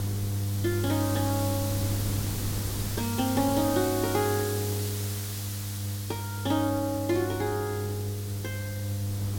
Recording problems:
hum; 50 Hz, harmonics up to 500 Hz, SNR 3 dB
hiss; slope +1 dB per octave, SNR 7 dB
wind on the microphone; below 310 Hz, SNR 13 dB

